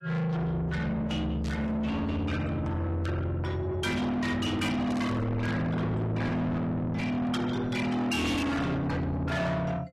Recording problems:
codec artefacts; AAC, log-spectral distance 2 dB, nothing above 13.1 kHz
distorted audio; soft clipping, signal-to-distortion ratio 6 dB
static burst; at 1.5 s, at 3 s and at 5 s; peak -12 dB vs average level

